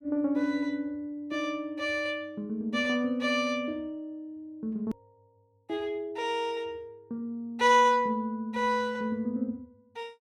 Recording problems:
edit click; at 5 s

